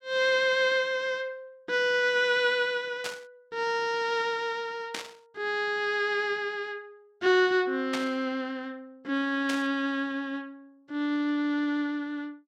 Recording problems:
burst of static; 4 times, first at 3 s; peak -1 dB vs average level

